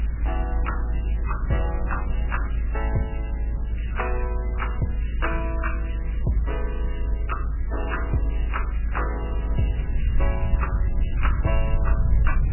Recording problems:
codec artefacts; MP3, log-spectral distance 5 dB, nothing above 2.9 kHz
hiss; SNR 18 dB
rumble; below 56 Hz, strongest tone 54 Hz, SNR -5 dB
wind noise; below 210 Hz, SNR 10 dB

